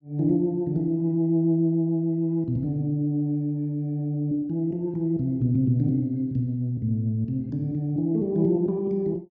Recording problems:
none

